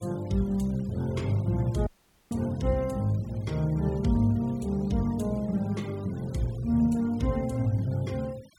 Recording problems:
noise reduction artefacts; signal-to-artefact ratio 24 dB
dropout; at 2 s

